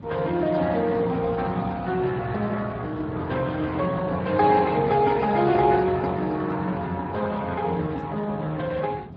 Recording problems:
lossy compression; MP3, then Speex, log-spectral distance 3 dB
wind noise; below 300 Hz, SNR 17 dB

